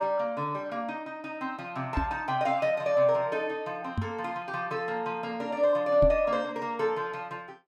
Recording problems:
microphone bump; at 2 s, at 4 s and at 6 s; peak +3 dB vs average level

